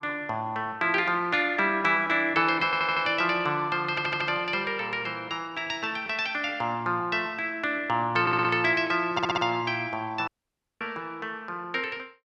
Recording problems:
audio stuttering; 4 times, first at 2.5 s
audio cutting out; at 10 s for 0.5 s

